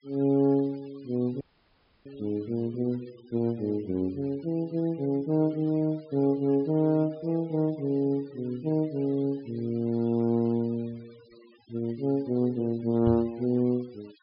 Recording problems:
treble cut off; nothing above 5.5 kHz
noise reduction artefacts; signal-to-artefact ratio 27 dB
audio cutting out; at 1.5 s for 0.5 s
microphone thump; at 13 s; peak 0 dB vs average level

